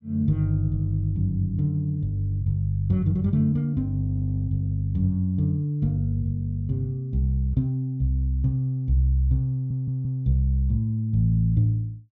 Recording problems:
audio stuttering; at 4 s and at 9.5 s

